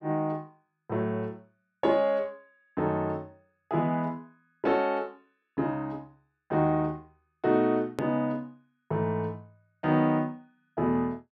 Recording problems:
edit click; at 8 s

